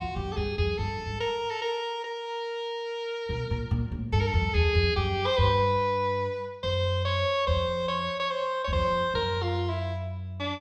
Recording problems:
none

